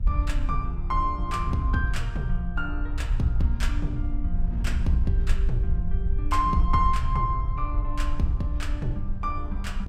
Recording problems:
rumble; below 62 Hz, SNR 0 dB
wind noise; below 160 Hz, SNR 14 dB

